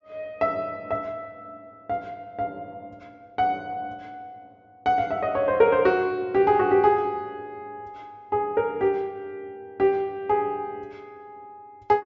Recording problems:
treble cut off; nothing above 7.5 kHz

